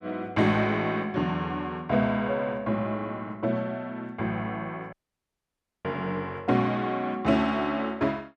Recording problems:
dropout; at 5 s for 1 s

